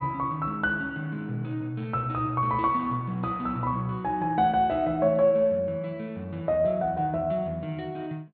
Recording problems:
treble cut off; nothing above 4.4 kHz

